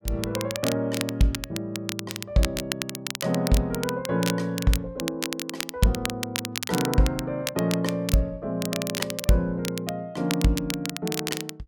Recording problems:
crackling; vinyl, SNR 6 dB

